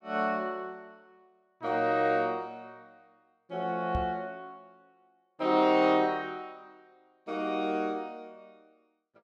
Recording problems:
microphone thump; at 4 s; peak -1 dB vs average level

